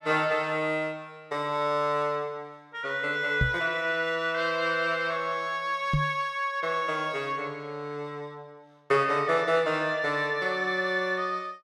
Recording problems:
knock on the microphone; at 3.5 s and at 6 s; peak +4 dB vs average level

